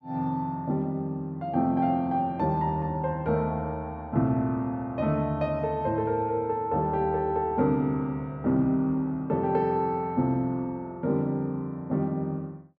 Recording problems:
none

